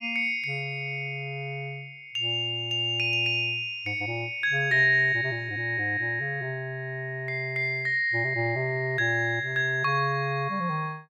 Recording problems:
none

